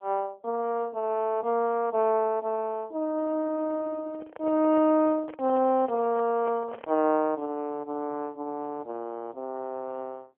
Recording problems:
phone line; 240 Hz to 3.1 kHz, AMR-NB
microphone handling noise; from 4 to 7 s; peak -7 dB vs average level

